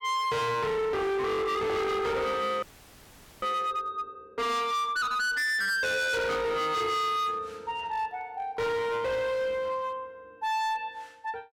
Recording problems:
distortion; hard clipping, uneven, signal-to-distortion ratio 6 dB
audio freezing; at 2.5 s for 1 s

